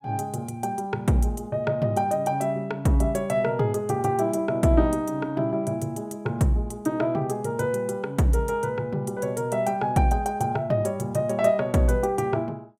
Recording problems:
none

